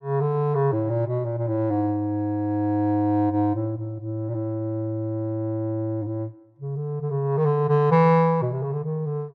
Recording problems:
none

